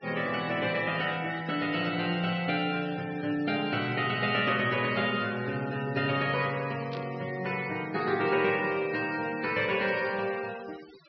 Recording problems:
treble cut off; nothing above 5.5 kHz
noise reduction artefacts; signal-to-artefact ratio 18 dB
burst of static; at 7 s; peak -10 dB vs average level

